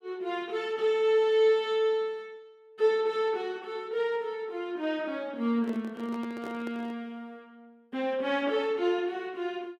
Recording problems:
microphone handling noise; from 5.5 to 7 s; peak -9 dB vs average level

